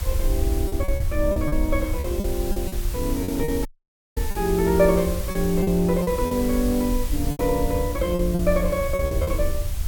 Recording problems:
hiss; SNR 12 dB
rumble; below 74 Hz, SNR 5 dB
wind noise; below 1.6 kHz, SNR 25 dB
lost packets; 10% of the sound replaced, filled with repeated pitch periods
dropout; at 3.5 s for 0.5 s

